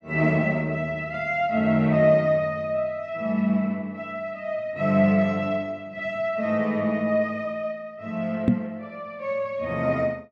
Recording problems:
microphone bump; at 8.5 s; peak +9 dB vs average level

